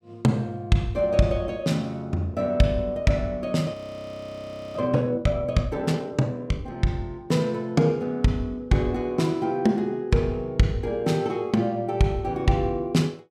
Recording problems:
frozen audio; at 3.5 s for 1 s

